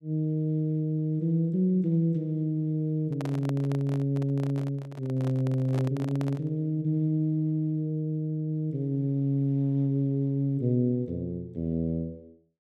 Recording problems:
microphone handling noise; from 3 to 6.5 s; peak -6 dB vs average level

